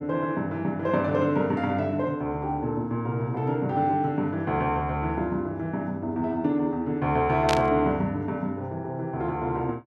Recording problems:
static burst; at 7.5 s; peak +2 dB vs average level

